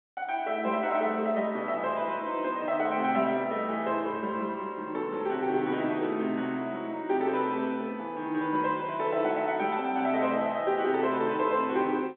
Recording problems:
telephone audio; 240 Hz to 3.6 kHz, G.711

